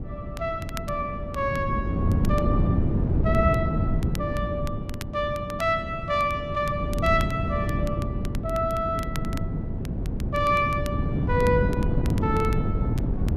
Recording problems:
wind noise; below 220 Hz, SNR 0 dB
crackling; vinyl, SNR 18 dB

